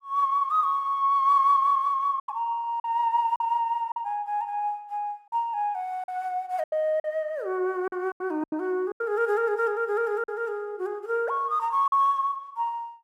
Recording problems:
lost packets; 6% of the sound replaced, filled with silence

